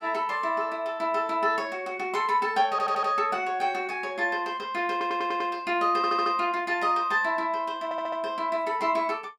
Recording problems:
stutter; 4 times, first at 2.5 s

